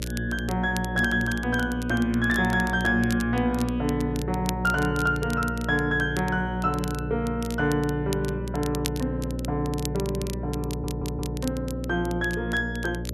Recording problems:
mains hum; 60 Hz, harmonics up to 600 Hz, SNR 6 dB
crackle; vinyl, SNR 15 dB
audio stuttering; at 11 s

